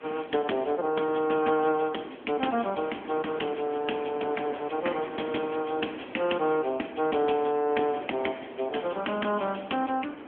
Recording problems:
phone line; 220 Hz to 3.3 kHz, AMR-NB
wind on the microphone; below 1.1 kHz, SNR 16 dB

